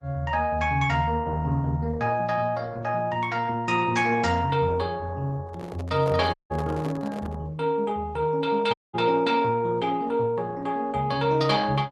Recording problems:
codec artefacts; Opus, log-spectral distance 3 dB, nothing above 10.7 kHz
handling noise; from 5.5 to 7.5 s; peak -6 dB vs average level
dropout; at 6.5 s and at 8.5 s

